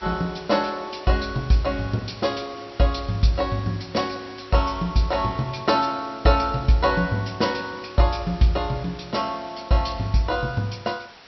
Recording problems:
treble missing; nothing above 5.7 kHz
hiss; slope -2 dB per octave, SNR 20 dB

